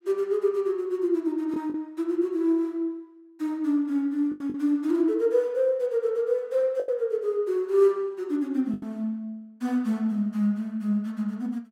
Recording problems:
lost packets; 3% of the sound replaced, filled with the last packet

